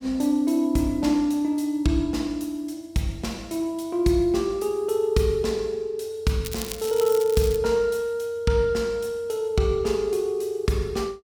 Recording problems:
crackling; from 6.5 to 7.5 s; loose cable, SNR 12 dB

